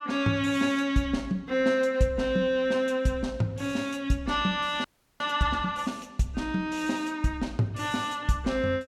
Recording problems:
audio freezing; at 5 s

